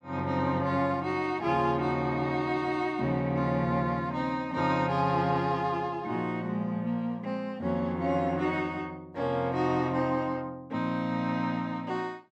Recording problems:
none

